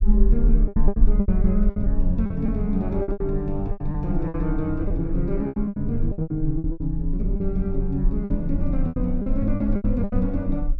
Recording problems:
low-frequency rumble; below 42 Hz, strongest tone 20 Hz, SNR 2 dB
packet loss; 15% of the sound replaced, filled with repeated pitch periods

